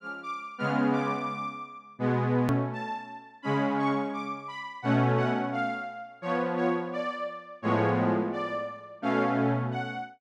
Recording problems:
edit click; at 2.5 s

